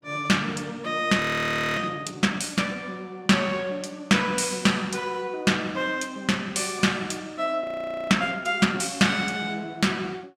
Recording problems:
frozen audio; at 1 s for 0.5 s and at 7.5 s

